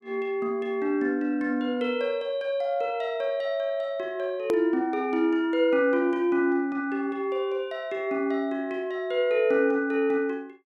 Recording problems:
hard cut with a click; at 4.5 s

